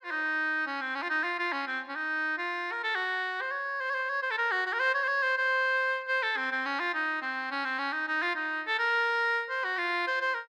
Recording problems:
none

